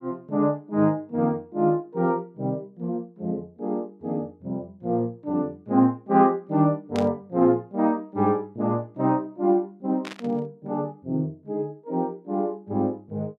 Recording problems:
burst of static; at 7 s and at 10 s; peak -7 dB vs average level

